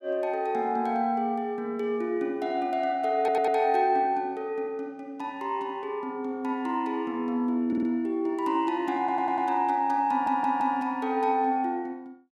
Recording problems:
stutter; 4 times, first at 3 s

